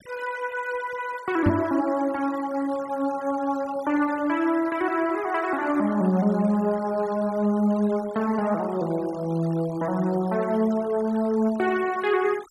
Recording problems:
denoising artefacts; signal-to-artefact ratio 21 dB
microphone bump; at 1.5 s; peak +5 dB vs average level

